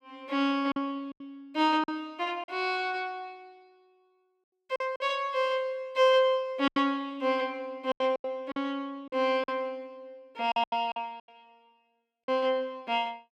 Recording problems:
lost packets; 8% of the sound replaced, filled with silence

